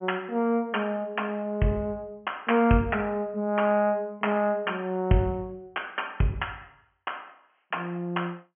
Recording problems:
treble missing; nothing above 3.2 kHz

